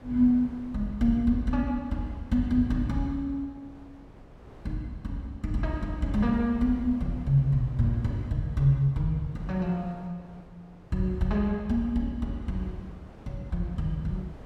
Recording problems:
wind on the microphone; below 490 Hz, SNR 21 dB

